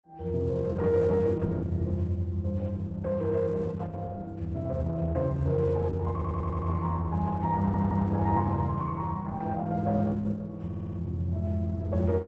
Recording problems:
lossy compression; Opus, log-spectral distance 2 dB, nothing above 7.8 kHz
audio stuttering; at 6 s, at 7.5 s and at 11 s

